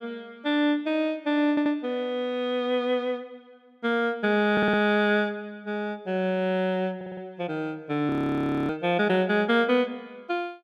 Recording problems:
stutter; at 1.5 s, at 4.5 s and at 7 s
frozen audio; at 8 s for 0.5 s

